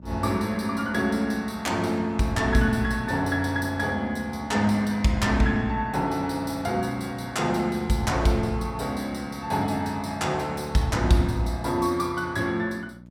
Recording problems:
hum; 60 Hz, harmonics up to 660 Hz, SNR 21 dB

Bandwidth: 17 kHz